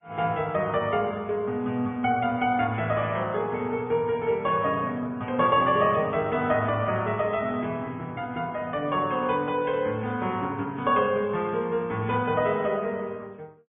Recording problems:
treble missing; nothing above 3 kHz
codec artefacts; Vorbis, log-spectral distance 2 dB

